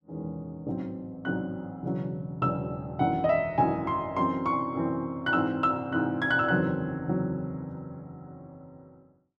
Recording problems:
none

